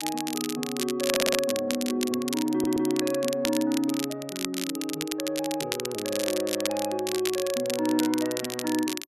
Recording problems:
crackling; vinyl, SNR 5 dB
stutter; at 1 s and at 2.5 s

